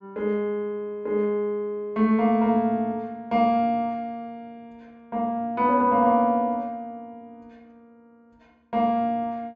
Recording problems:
treble cut off; nothing above 7.8 kHz

